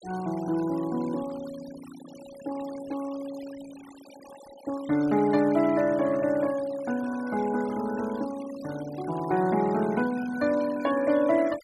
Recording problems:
noise reduction artefacts; signal-to-artefact ratio 19 dB

